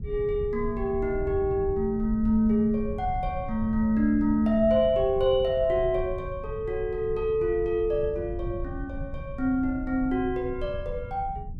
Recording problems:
low-frequency rumble; below 110 Hz, SNR 11 dB

